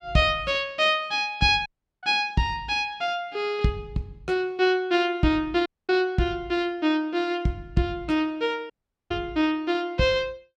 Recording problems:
dropout; at 1.5 s, at 5.5 s and at 8.5 s

